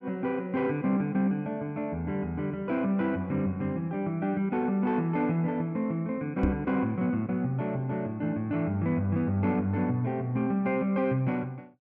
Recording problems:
microphone bump; at 6.5 s; peak +4 dB vs average level

